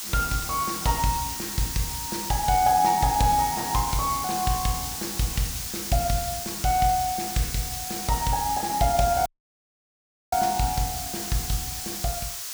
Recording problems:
hiss; slope +3 dB per octave, SNR 5 dB
dropout; at 9.5 s for 1 s

